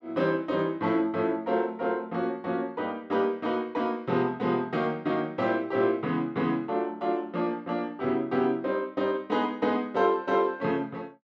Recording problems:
none

